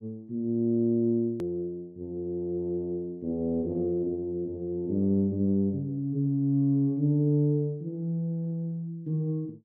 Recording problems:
hard cut with a click; at 1.5 s

